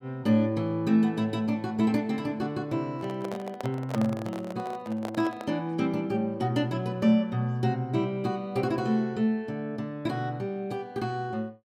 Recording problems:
handling noise; from 3 to 5.5 s; peak -1 dB vs average level

